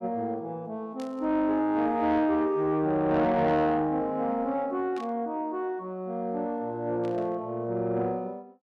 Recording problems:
distorted audio; soft clipping, signal-to-distortion ratio 12 dB
burst of static; at 1 s, at 5 s and at 7 s; peak -15 dB vs average level

